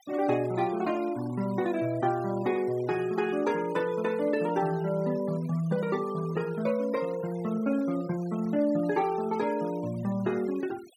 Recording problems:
noise reduction artefacts; signal-to-artefact ratio 20 dB

